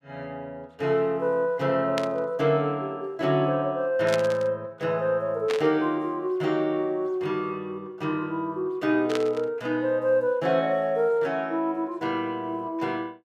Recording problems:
burst of static; 4 times, first at 2 s; peak -1 dB vs average level

